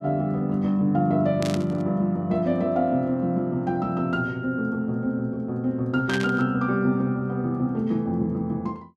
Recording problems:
burst of static; at 1.5 s and at 6 s; peak -2 dB vs average level

